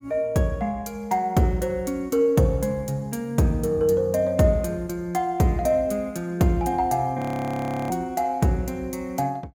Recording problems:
audio freezing; at 7 s for 0.5 s

